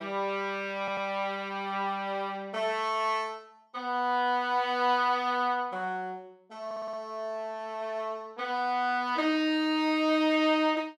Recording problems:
audio stuttering; at 1 s and at 6.5 s

